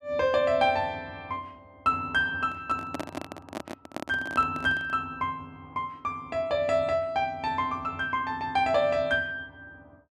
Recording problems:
handling noise; from 2.5 to 5 s; peak -1 dB vs average level

